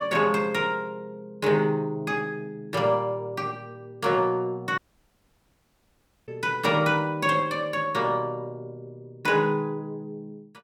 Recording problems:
dropout; at 5 s for 1.5 s

